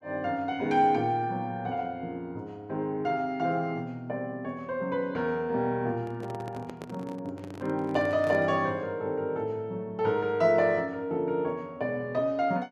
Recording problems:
handling noise; from 6 to 8.5 s; peak -6 dB vs average level

